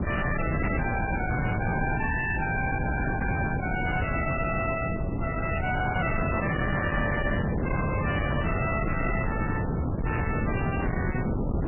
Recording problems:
lossy compression; MP3, log-spectral distance 6 dB, nothing above 2.4 kHz
distorted audio; hard clipping, signal-to-distortion ratio 6 dB
wind on the microphone; below 460 Hz, SNR 0 dB

